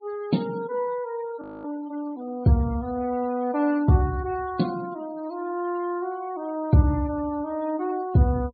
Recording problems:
treble missing; nothing above 4.6 kHz
noise reduction artefacts; signal-to-artefact ratio 21 dB
frozen audio; at 1.5 s

